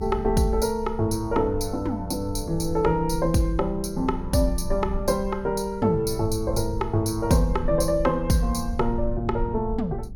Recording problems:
low-frequency rumble; below 68 Hz, SNR 10 dB

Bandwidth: 17 kHz